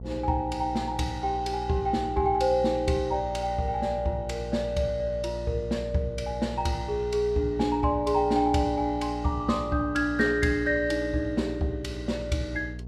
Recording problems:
electrical hum; 60 Hz, harmonics up to 480 Hz, SNR 11 dB

